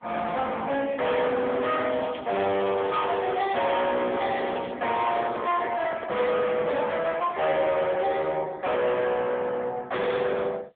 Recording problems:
phone line; 260 Hz to 3.5 kHz, AMR-NB
distorted audio; soft clipping, signal-to-distortion ratio 7 dB
crackle; from 2 to 4.5 s; loose cable, SNR 18 dB
handling noise; from 3.5 to 7 s; peak -2 dB vs average level

